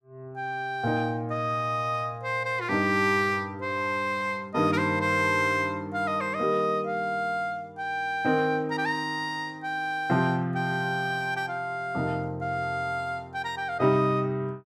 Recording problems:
none

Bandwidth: 14.5 kHz